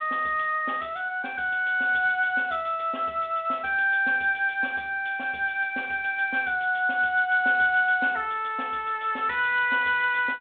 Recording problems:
phone line; 280 Hz to 3.7 kHz, G.726

